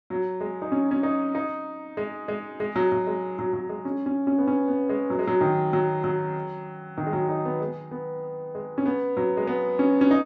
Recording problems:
none

